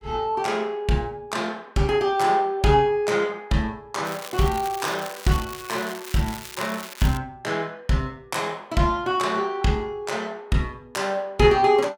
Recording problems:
crackling; from 4 to 7 s; loose cable, SNR 13 dB

